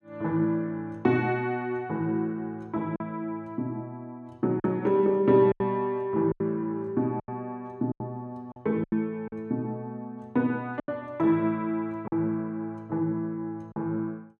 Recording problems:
lost packets; 5% of the sound replaced, filled with silence

